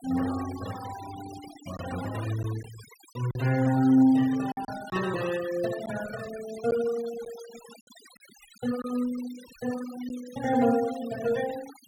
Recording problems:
denoising artefacts; signal-to-artefact ratio 15 dB
packet loss; 2% of the sound replaced, filled with silence

